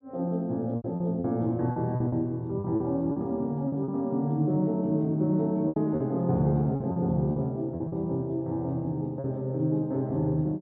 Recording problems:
packet loss; 8% of the sound replaced, filled with repeated pitch periods

